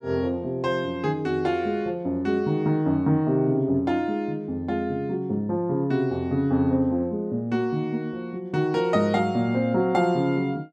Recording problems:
none

